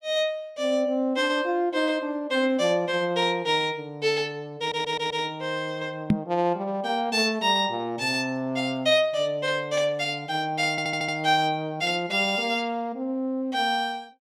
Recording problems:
stutter; at 4.5 s and at 11 s
microphone bump; at 6 s; peak +8 dB vs average level

